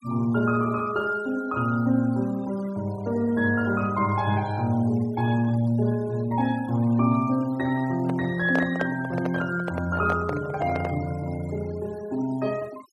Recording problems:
noise reduction artefacts; signal-to-artefact ratio 21 dB
microphone handling noise; from 8 to 11 s; peak 0 dB vs average level

